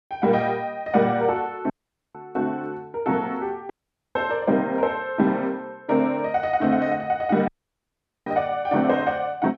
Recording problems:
dropout; at 1.5 s, at 3.5 s and at 7.5 s for 1 s
burst of static; at 8.5 s; peak -35 dB vs average level

